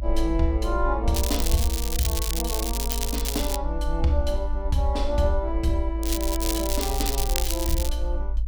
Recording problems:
rumble; below 54 Hz, strongest tone 54 Hz, SNR 2 dB
crackling; from 1 to 3.5 s and from 6 to 8 s; loose cable, SNR 2 dB

